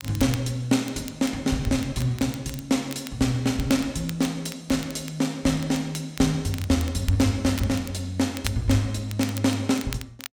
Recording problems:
crackling; vinyl, SNR 16 dB

